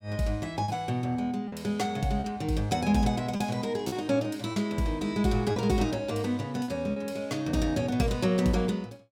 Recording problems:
packet loss; 4% of the sound replaced, filled with repeated pitch periods

